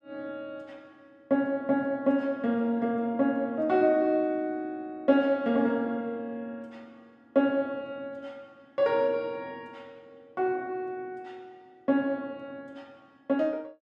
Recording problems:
none

